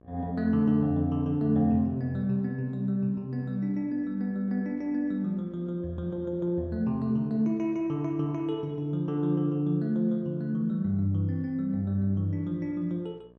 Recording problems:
hum; 60 Hz, harmonics up to 1.7 kHz, SNR 29 dB

